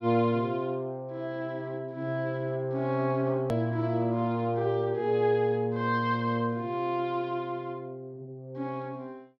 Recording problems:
click at an edit; at 3.5 s

